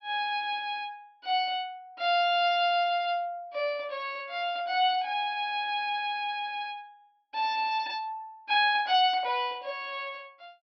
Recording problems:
treble missing; nothing above 5.5 kHz

